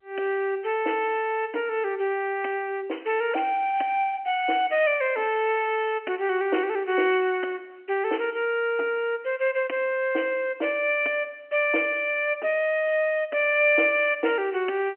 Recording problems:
telephone audio; 260 Hz to 3.1 kHz, G.711

